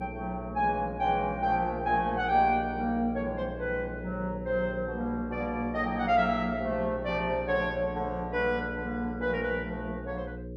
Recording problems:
electrical hum; 60 Hz, harmonics up to 540 Hz, SNR 10 dB

